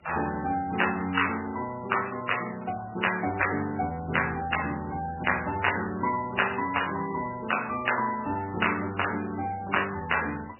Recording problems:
lossy compression; Vorbis, then MP3, log-spectral distance 11 dB, nothing above 2.9 kHz
background hiss; SNR 25 dB

